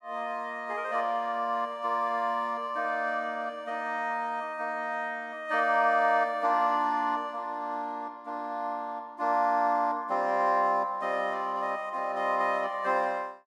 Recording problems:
none

